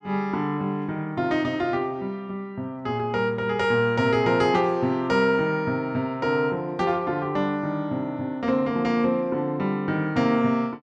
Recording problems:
none

